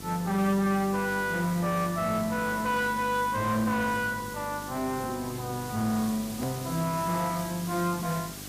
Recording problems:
distorted audio; soft clipping, signal-to-distortion ratio 11 dB
hum; 50 Hz, harmonics up to 1.2 kHz, SNR 16 dB
background hiss; SNR 13 dB
hard cut with a click; at 6.5 s

